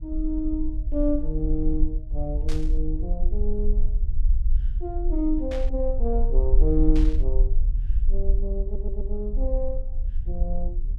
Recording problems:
low-frequency rumble; below 44 Hz, SNR -3 dB
burst of static; at 2.5 s, at 5.5 s and at 7 s; peak -6 dB vs average level
stutter; at 8.5 s

